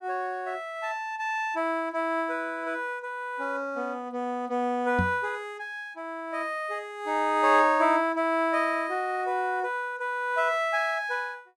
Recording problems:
microphone thump; at 5 s; peak +3 dB vs average level

